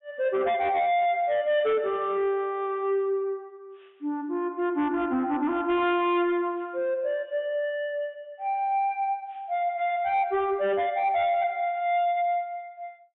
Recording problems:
treble cut off; nothing above 3.6 kHz
distortion; soft clipping, signal-to-distortion ratio 11 dB

